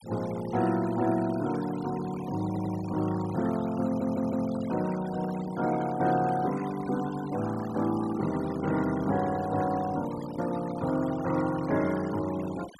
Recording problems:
denoising artefacts; signal-to-artefact ratio 15 dB
audio stuttering; at 2.5 s and at 4 s

